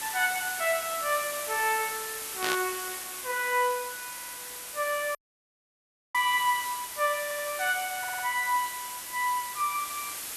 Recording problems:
hiss; slope +1 dB per octave, SNR 6 dB
burst of static; at 2.5 s; peak +2 dB vs average level
stutter; at 4 s, at 7 s and at 8 s
audio cutting out; at 5 s for 1 s

